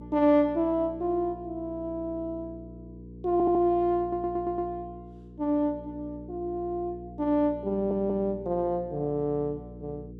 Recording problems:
hum; 60 Hz, harmonics up to 480 Hz, SNR 16 dB
stutter; at 3.5 s, at 4 s and at 7.5 s

